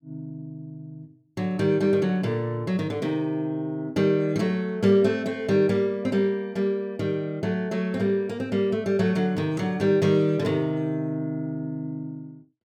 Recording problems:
none

